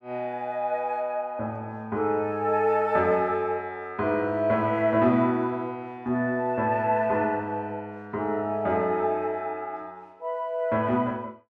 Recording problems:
none

